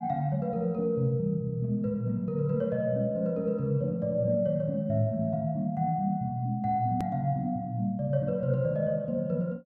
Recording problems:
hard cut with a click; at 7 s

